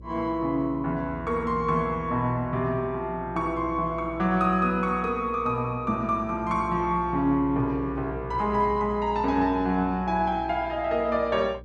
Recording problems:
mains hum; 60 Hz, harmonics up to 600 Hz, SNR 16 dB

